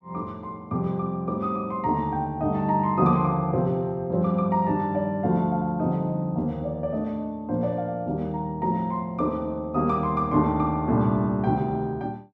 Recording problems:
none

